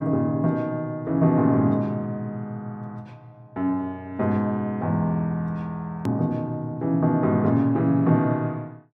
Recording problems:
click at an edit; at 6 s

